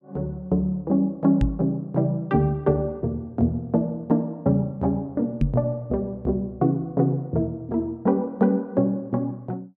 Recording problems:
microphone bump; at 1.5 s and at 5.5 s; peak +6 dB vs average level

